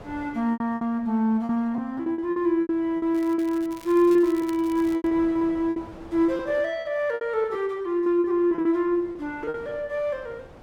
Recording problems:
wind on the microphone; below 750 Hz, SNR 24 dB
packet loss; 15% of the sound replaced, filled with repeated pitch periods
crackling; from 3 to 5 s; loose cable, SNR 23 dB

